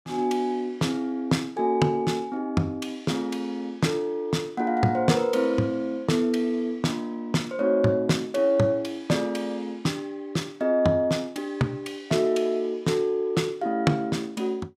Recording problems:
none

